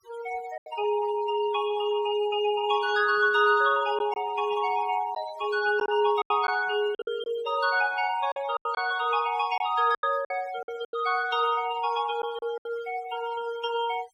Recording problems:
denoising artefacts; signal-to-artefact ratio 18 dB
lost packets; 6% of the sound replaced, filled with silence

